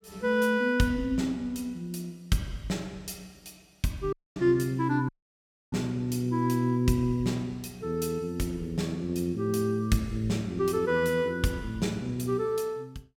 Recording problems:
dropout; at 4 s and at 5 s for 0.5 s

